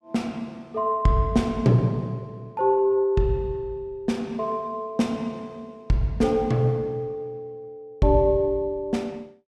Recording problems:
none

